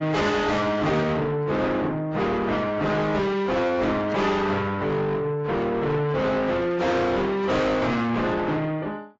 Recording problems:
lossy codec; AAC, then AAC, log-spectral distance 3 dB, nothing above 7.3 kHz
distortion; soft clipping, signal-to-distortion ratio 7 dB

